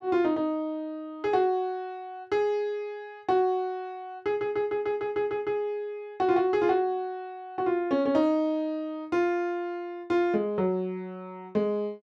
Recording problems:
none

